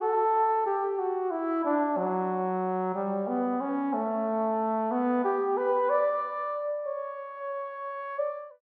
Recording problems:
none

